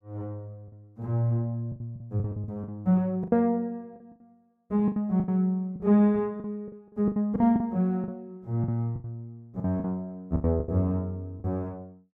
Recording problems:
packet loss; 12% of the sound replaced, filled with the last packet

